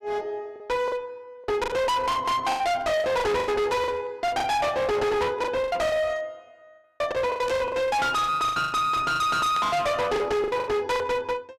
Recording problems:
distorted audio; hard clipping, uneven, signal-to-distortion ratio 5 dB
packet loss; 15% of the sound replaced, filled with the last packet
static burst; at 7.5 s and at 9.5 s; peak -7 dB vs average level

